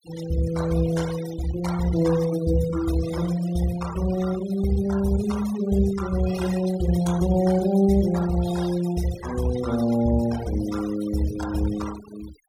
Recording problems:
denoising artefacts; signal-to-artefact ratio 14 dB

